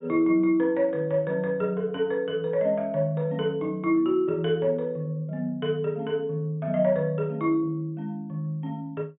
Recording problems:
treble cut off; nothing above 3.6 kHz

